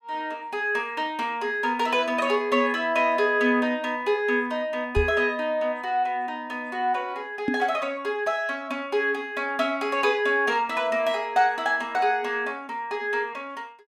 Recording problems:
microphone thump; at 5 s and at 7.5 s; peak +2 dB vs average level

